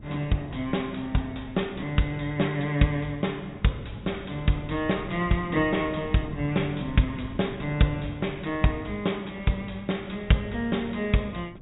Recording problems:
treble missing; nothing above 4 kHz
wind noise; below 210 Hz, SNR 16 dB

